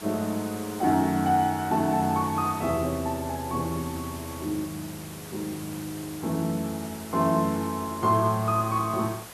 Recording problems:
background hiss; slope -2 dB per octave, SNR 14 dB

